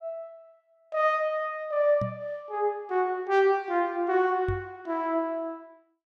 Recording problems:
knock on the microphone; at 2 s and at 4.5 s; peak -2 dB vs average level

